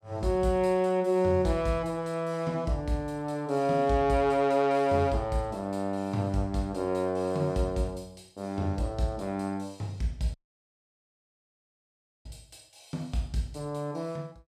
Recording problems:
dropout; at 10 s for 2 s

